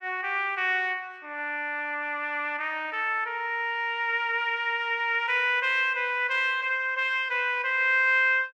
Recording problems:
none

